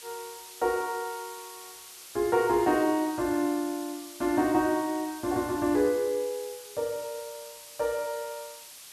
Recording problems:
background hiss; slope +2 dB per octave, SNR 15 dB

